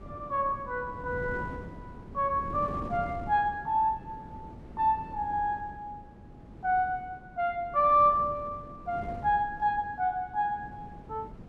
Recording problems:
wind noise; below 320 Hz, SNR 15 dB

